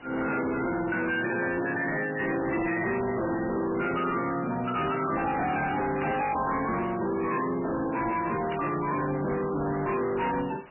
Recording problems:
lossy codec; MP3, log-spectral distance 7 dB, nothing above 2.9 kHz
distorted audio; hard clipping, signal-to-distortion ratio 7 dB
hiss; SNR 22 dB
burst of static; 4 times, first at 1.5 s; peak -6 dB vs average level

